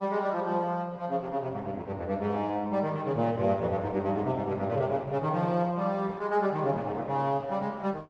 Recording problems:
lossy codec; Opus, log-spectral distance 2 dB

